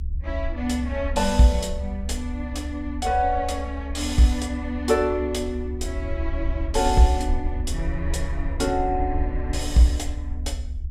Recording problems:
rumble; below 70 Hz, SNR 6 dB

